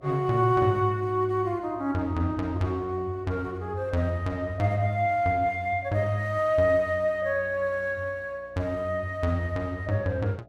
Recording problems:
hum; 60 Hz, harmonics up to 720 Hz, SNR 27 dB

